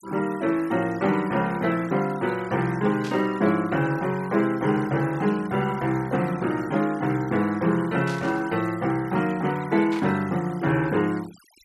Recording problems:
denoising artefacts; signal-to-artefact ratio 20 dB
static burst; at 3 s, at 8 s and at 10 s; peak -9 dB vs average level

